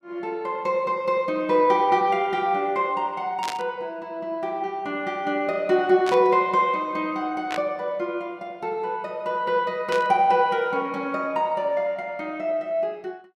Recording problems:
static burst; 4 times, first at 3.5 s; peak -3 dB vs average level

